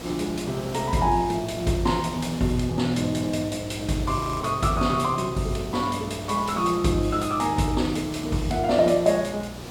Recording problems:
hum; 60 Hz, harmonics up to 660 Hz, SNR 18 dB
hiss; SNR 14 dB
audio freezing; at 4 s

